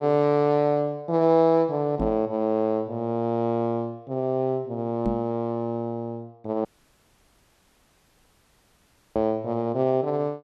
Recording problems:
knock on the microphone; at 2 s, at 5 s and at 9 s; peak 0 dB vs average level
dropout; at 6.5 s for 2.5 s

